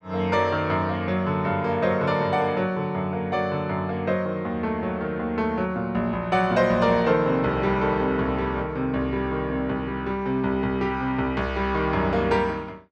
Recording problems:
none

